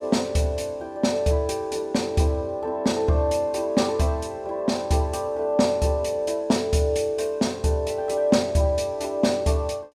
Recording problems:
none

